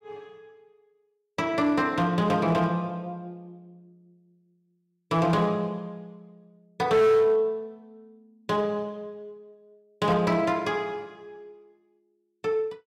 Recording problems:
distortion; hard clipping, signal-to-distortion ratio 12 dB

